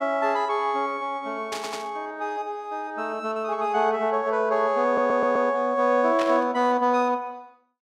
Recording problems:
static burst; at 1.5 s and at 6 s; peak -5 dB vs average level
audio stuttering; at 1.5 s and at 5 s

